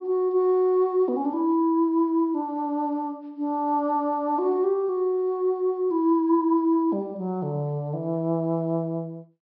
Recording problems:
treble missing; nothing above 5.5 kHz

